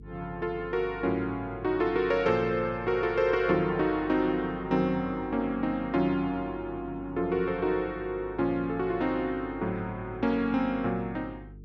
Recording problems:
hum; 50 Hz, harmonics up to 450 Hz, SNR 18 dB

